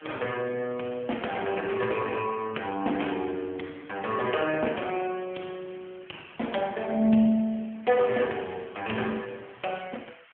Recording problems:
phone line; 170 Hz to 3.2 kHz, AMR-NB
background hiss; SNR 25 dB

